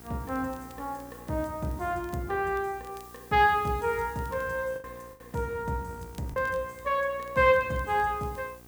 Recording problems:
hum; 60 Hz, harmonics up to 2 kHz, SNR 23 dB
background hiss; slope +4 dB per octave, SNR 23 dB
crackle; vinyl, SNR 30 dB
lost packets; 2% of the sound replaced, filled with the last packet

